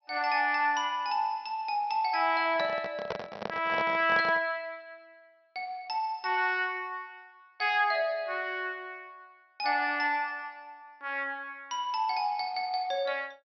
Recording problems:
low-pass filter; nothing above 5.9 kHz
handling noise; from 2.5 to 4.5 s; peak 0 dB vs average level

